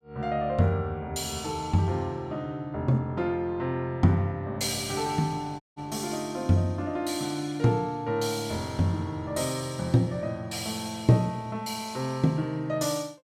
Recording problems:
audio cutting out; at 5.5 s

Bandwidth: 16.5 kHz